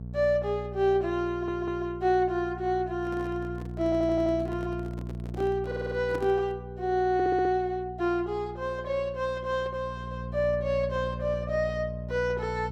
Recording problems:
hum; 60 Hz, harmonics up to 480 Hz, SNR 10 dB
audio stuttering; 4 times, first at 1.5 s
microphone handling noise; from 3 to 6.5 s; peak -4 dB vs average level

